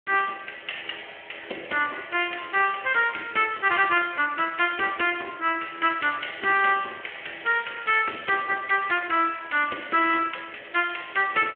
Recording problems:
telephone audio; 280 Hz to 3.2 kHz, Speex

